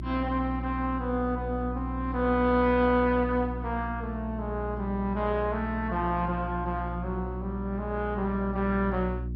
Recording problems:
lossy codec; MP2, log-spectral distance 2 dB, nothing above 4.5 kHz
hum; 60 Hz, harmonics up to 360 Hz, SNR 7 dB

